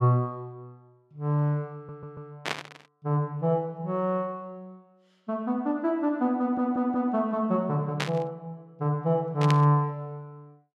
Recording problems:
stutter; at 2 s and at 6.5 s
static burst; at 2.5 s, at 8 s and at 9.5 s; peak +2 dB vs average level

